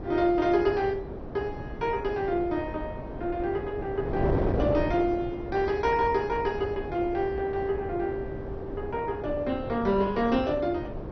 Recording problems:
lossy codec; MP2, log-spectral distance 2 dB, nothing above 5.8 kHz
wind on the microphone; below 490 Hz, SNR 7 dB

